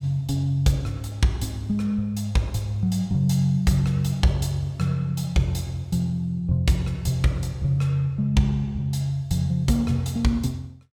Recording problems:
none

